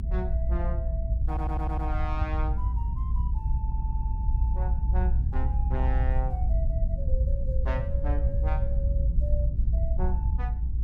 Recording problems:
rumble; below 66 Hz, strongest tone 58 Hz, SNR -10 dB
stutter; at 1.5 s and at 3.5 s

